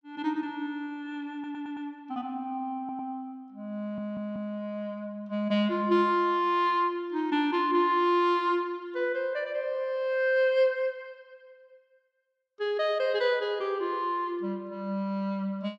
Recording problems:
stutter; at 1.5 s, at 3 s and at 4 s

